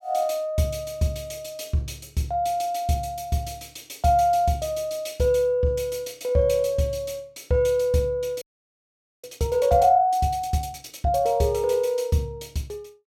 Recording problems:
audio freezing; at 8.5 s for 1 s

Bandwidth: 16.5 kHz